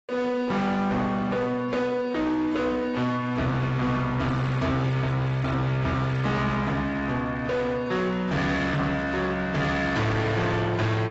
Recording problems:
codec artefacts; AAC, log-spectral distance 2 dB, nothing above 7.6 kHz
distorted audio; hard clipping, signal-to-distortion ratio 8 dB

